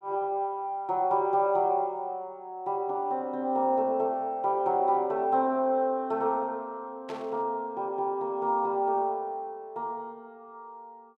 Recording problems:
static burst; at 7 s; peak -12 dB vs average level

